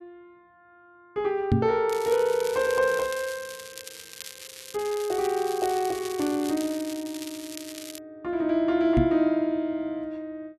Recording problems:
microphone bump; at 1.5 s and at 9 s; peak +7 dB vs average level
crackling; from 2 to 8 s; loose cable, SNR 14 dB

